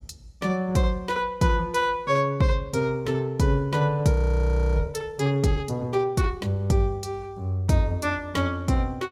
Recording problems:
frozen audio; at 4 s for 0.5 s

